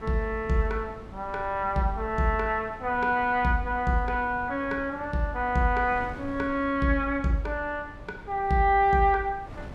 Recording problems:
wind on the microphone; below 320 Hz, SNR 18 dB

